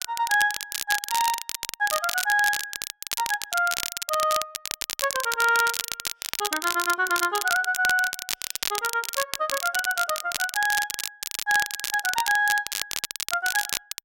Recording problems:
crackle; vinyl, SNR 4 dB

